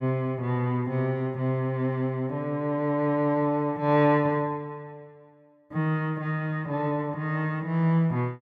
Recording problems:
none

